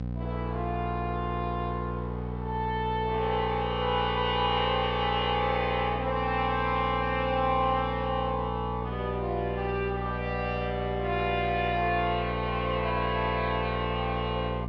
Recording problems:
mains hum; 60 Hz, harmonics up to 780 Hz, SNR 6 dB

